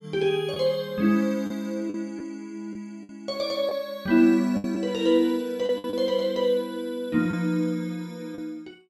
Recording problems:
packet loss; 5% of the sound replaced, filled with the last packet

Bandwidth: 15.5 kHz